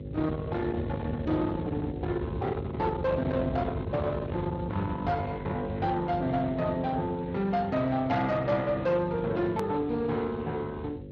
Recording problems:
lossy codec; Speex, log-spectral distance 2 dB, nothing above 13.1 kHz
distortion; soft clipping, signal-to-distortion ratio 10 dB
electrical hum; 50 Hz, harmonics up to 550 Hz, SNR 11 dB
rumble; below 470 Hz, SNR 9 dB
hard cut with a click; at 9.5 s

